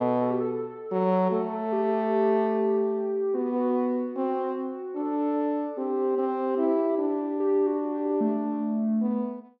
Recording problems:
none

